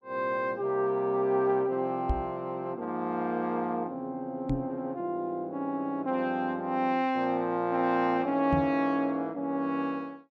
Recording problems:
microphone thump; at 2 s, at 4.5 s and at 8.5 s; peak +3 dB vs average level

